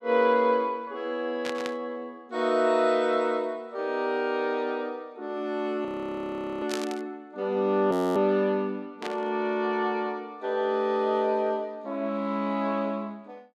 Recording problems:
burst of static; at 1.5 s, at 6.5 s and at 9 s; peak -2 dB vs average level
frozen audio; at 6 s for 1 s and at 8 s

